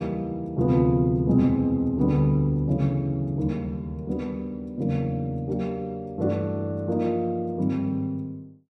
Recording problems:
none

